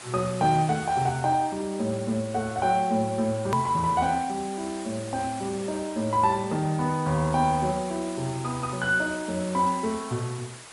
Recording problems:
lossy codec; MP3, log-spectral distance 7 dB, nothing above 13.1 kHz
background hiss; SNR 15 dB
hard cut with a click; at 3.5 s

